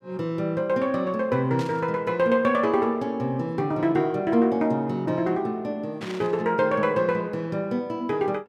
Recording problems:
burst of static; at 1.5 s and at 6 s; peak -9 dB vs average level

